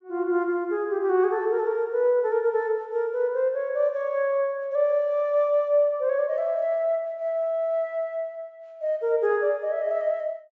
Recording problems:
low-pass filter; nothing above 8 kHz

